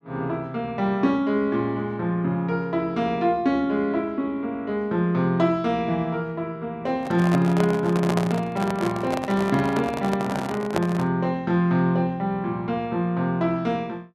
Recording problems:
microphone handling noise; from 7 to 11 s; peak +2 dB vs average level

